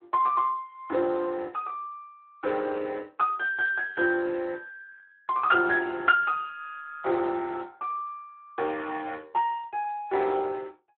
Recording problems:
telephone audio; 300 Hz to 3.3 kHz, Speex

